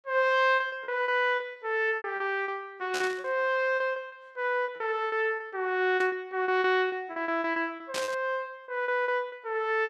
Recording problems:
lost packets; 14% of the sound replaced, filled with repeated pitch periods
burst of static; at 3 s, at 6 s and at 8 s; peak -2 dB vs average level

